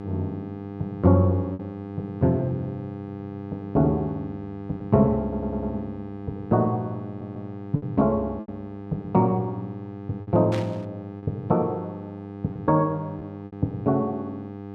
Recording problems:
hum; 50 Hz, harmonics up to 1.6 kHz, SNR 11 dB
lost packets; 3% of the sound replaced, filled with repeated pitch periods
audio stuttering; at 3 s, at 5 s and at 7 s
burst of static; at 11 s; peak -7 dB vs average level

